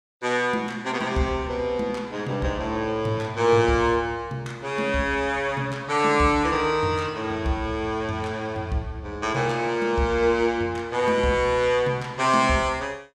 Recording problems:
none

